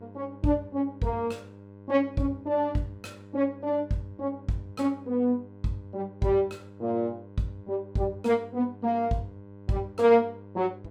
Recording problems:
electrical hum; 50 Hz, harmonics up to 1.1 kHz, SNR 19 dB

